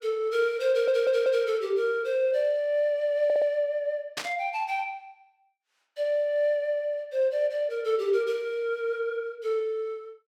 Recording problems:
audio stuttering; at 0.5 s and at 3 s
burst of static; at 4 s; peak -1 dB vs average level

